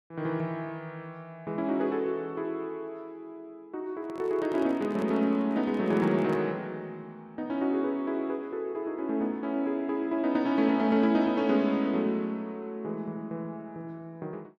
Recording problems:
microphone handling noise; from 4 to 6.5 s; peak -8 dB vs average level

